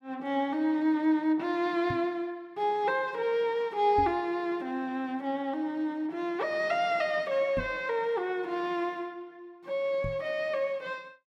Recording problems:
microphone thump; 4 times, first at 2 s; peak -2 dB vs average level

